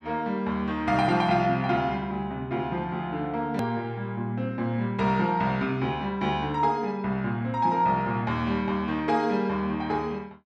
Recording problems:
hard cut with a click; at 3.5 s

